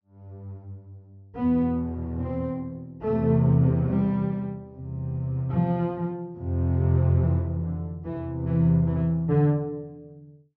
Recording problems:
treble cut off; nothing above 6.3 kHz

